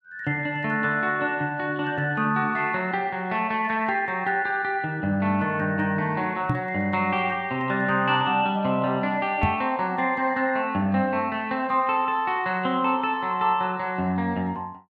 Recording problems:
microphone bump; at 6.5 s and at 9.5 s; peak +3 dB vs average level

